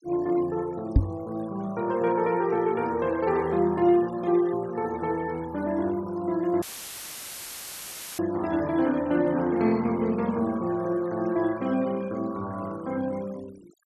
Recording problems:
denoising artefacts; signal-to-artefact ratio 21 dB
microphone bump; at 1 s; peak +9 dB vs average level
audio cutting out; at 6.5 s for 1.5 s; filled with static

